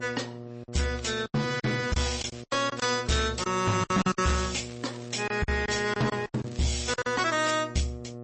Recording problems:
codec artefacts; MP3, then MP3, log-spectral distance 7 dB, nothing above 8 kHz
distortion; soft clipping, signal-to-distortion ratio 10 dB
hum; 60 Hz, harmonics up to 1.2 kHz, SNR 13 dB
packet loss; 10% of the sound replaced, filled with silence
crackling; from 1 to 2.5 s and from 4.5 to 7.5 s; loose cable, SNR 22 dB

